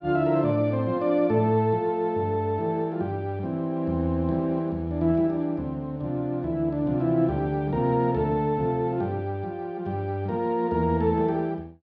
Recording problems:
none

